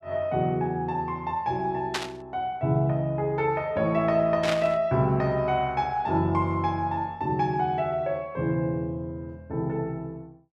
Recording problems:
burst of static; at 2 s and at 4.5 s; peak +2 dB vs average level

